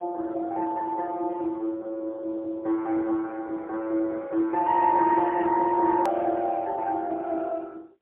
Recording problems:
telephone audio; 280 Hz to 3.8 kHz, AMR-NB, then MP3
edit click; at 6 s

